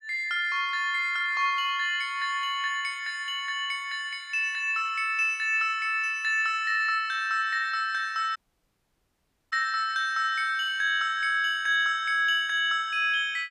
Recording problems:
dropout; at 8.5 s for 1 s

